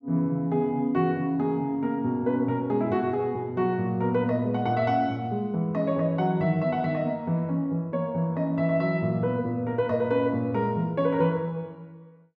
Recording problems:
none

